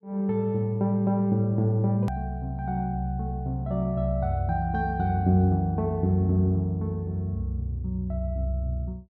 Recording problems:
edit click; at 2 s

